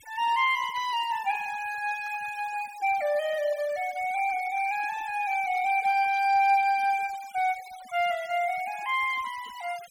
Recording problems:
denoising artefacts; signal-to-artefact ratio 20 dB

